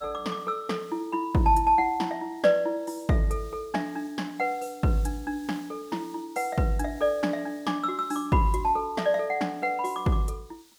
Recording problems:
background hiss; SNR 27 dB

